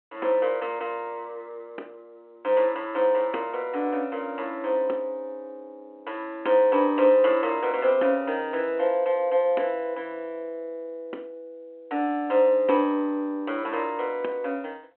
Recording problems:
phone line; 240 Hz to 3.3 kHz, G.726

